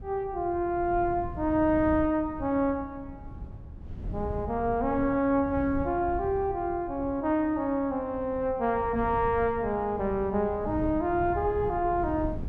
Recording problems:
wind on the microphone; below 140 Hz, SNR 13 dB

